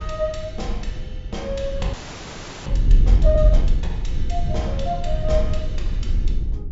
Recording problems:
treble missing; nothing above 7.5 kHz
rumble; below 54 Hz, SNR -5 dB
wind on the microphone; below 140 Hz, SNR 8 dB
audio freezing; at 2 s for 0.5 s

